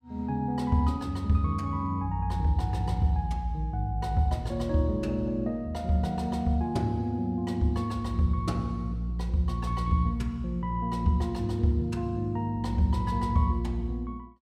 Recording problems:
none

